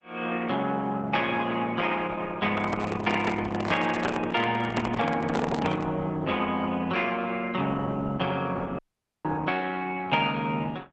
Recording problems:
lossy compression; Opus, log-spectral distance 4 dB
handling noise; from 2.5 to 6 s; peak +2 dB vs average level
audio cutting out; at 9 s

